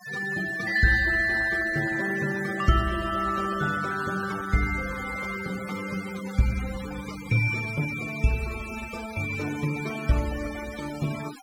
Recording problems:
denoising artefacts; signal-to-artefact ratio 14 dB

